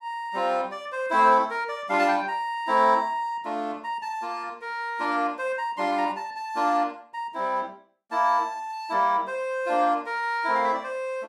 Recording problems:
none

